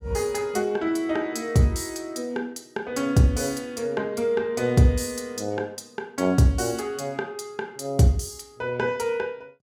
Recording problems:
none

